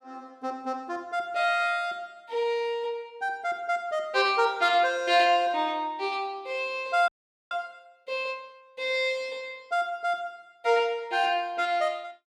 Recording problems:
audio freezing; at 7 s

